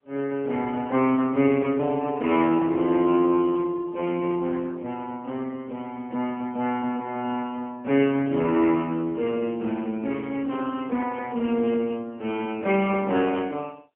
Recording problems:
phone line; 190 Hz to 3.1 kHz, AMR-NB, then MP3

